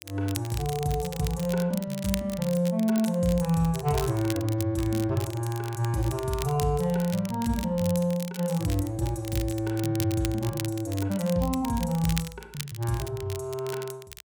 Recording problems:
crackle; vinyl, SNR 13 dB

